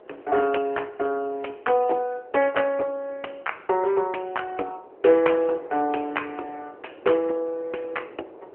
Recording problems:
telephone audio; 300 Hz to 3 kHz, AMR-NB
wind on the microphone; below 660 Hz, SNR 21 dB

